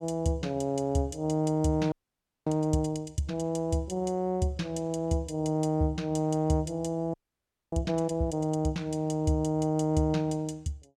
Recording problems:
frozen audio; at 2 s for 0.5 s and at 7 s for 0.5 s

